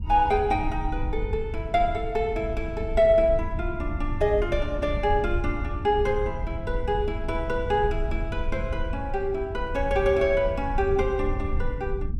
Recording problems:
low-frequency rumble; below 80 Hz, SNR 7 dB

